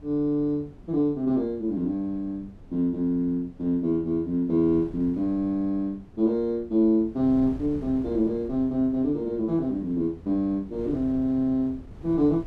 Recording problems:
wind noise; below 230 Hz, SNR 19 dB

